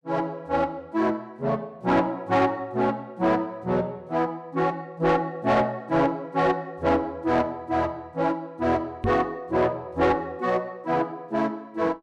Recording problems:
distortion; soft clipping, signal-to-distortion ratio 12 dB
knock on the microphone; at 9 s; peak +2 dB vs average level

